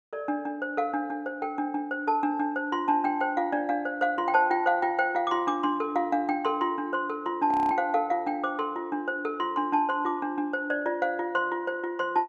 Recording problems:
audio freezing; at 7.5 s

